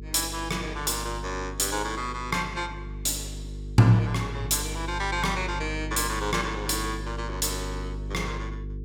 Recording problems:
electrical hum; 50 Hz, harmonics up to 450 Hz, SNR 9 dB

